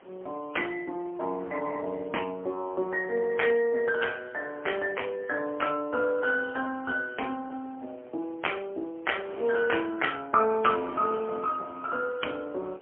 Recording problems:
phone line; 280 Hz to 3.2 kHz, AMR-NB, then MP3
wind noise; below 1.2 kHz, SNR 21 dB

